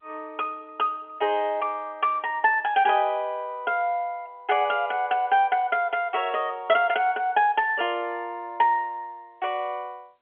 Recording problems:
telephone audio; 280 Hz to 3.3 kHz, G.711

